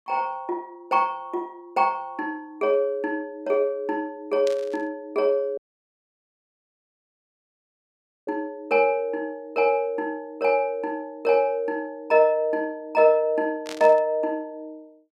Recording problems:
burst of static; at 4.5 s and at 14 s; peak -8 dB vs average level
dropout; at 5.5 s for 2.5 s

